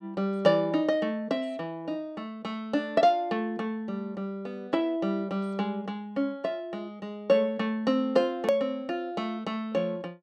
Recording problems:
click at an edit; at 8.5 s

